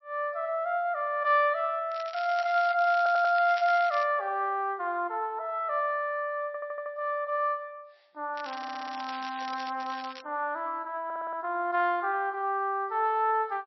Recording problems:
codec artefacts; MP3, log-spectral distance 2 dB, nothing above 4.9 kHz
crackling; from 2 to 4 s and from 8.5 to 10 s; loose cable, SNR 16 dB
stutter; 4 times, first at 3 s

